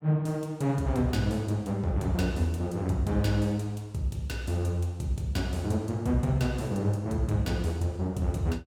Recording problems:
none

